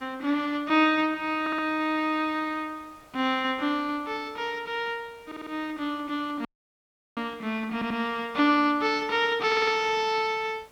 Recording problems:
background hiss; slope -4 dB per octave, SNR 29 dB
audio stuttering; 4 times, first at 1.5 s
audio cutting out; at 6.5 s for 0.5 s

